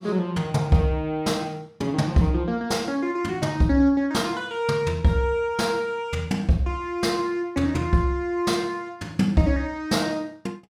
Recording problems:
none

